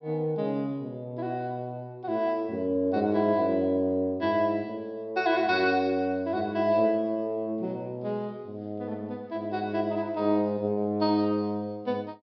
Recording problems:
treble cut off; nothing above 5.5 kHz

